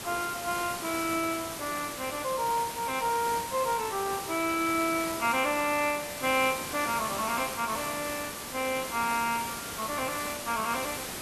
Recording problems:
hiss; slope -2 dB per octave, SNR 6 dB

